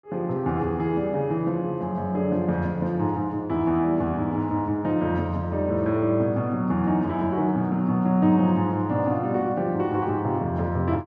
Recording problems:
none

